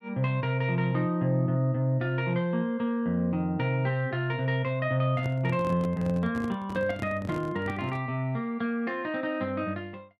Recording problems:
microphone handling noise; from 5 to 8 s; peak -4 dB vs average level

